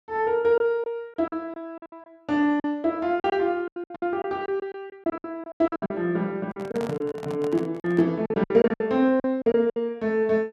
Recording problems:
lost packets; 15% of the sound replaced, filled with silence
microphone handling noise; from 6.5 to 8 s; peak -7 dB vs average level

